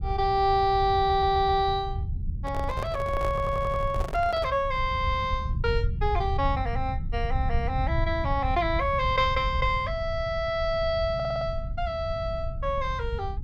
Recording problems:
low-frequency rumble; below 100 Hz, SNR 6 dB
stutter; at 1 s, at 3.5 s and at 11 s
microphone handling noise; from 2.5 to 4.5 s; peak -5 dB vs average level

